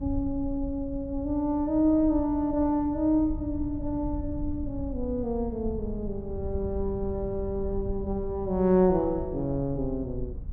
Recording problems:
low-frequency rumble; below 88 Hz, SNR 11 dB

